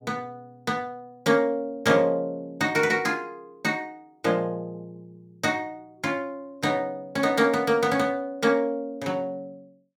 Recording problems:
none

